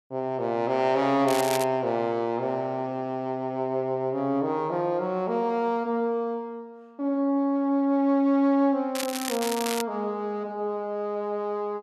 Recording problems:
crackle; at 1.5 s and at 9 s; loose cable, SNR 8 dB

